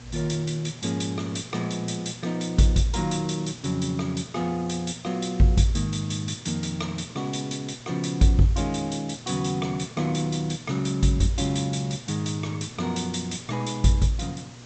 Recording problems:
treble missing; nothing above 8 kHz
hum; 60 Hz, harmonics up to 840 Hz, SNR 20 dB
background hiss; slope -2 dB per octave, SNR 21 dB

